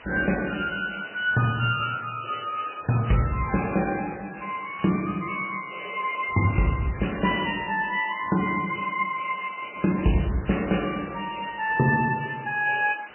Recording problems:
codec artefacts; MP3, log-spectral distance 21 dB, nothing above 2.5 kHz
background hiss; SNR 20 dB

